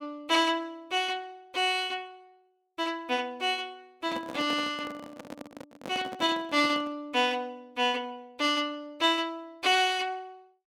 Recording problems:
handling noise; from 4 to 7 s; peak -7 dB vs average level

